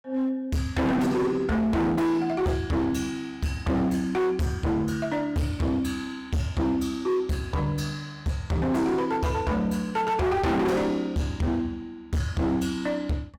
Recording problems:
distorted audio; hard clipping, signal-to-distortion ratio 6 dB

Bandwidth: 17.5 kHz